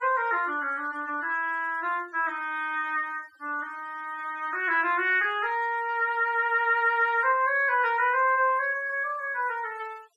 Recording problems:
noise reduction artefacts; signal-to-artefact ratio 27 dB

